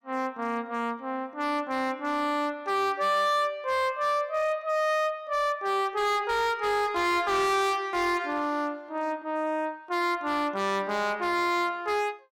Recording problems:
distorted audio; hard clipping, uneven, signal-to-distortion ratio 7 dB

